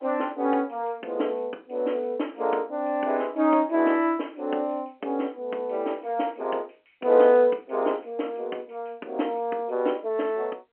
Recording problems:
telephone audio; 240 Hz to 3.2 kHz, G.711

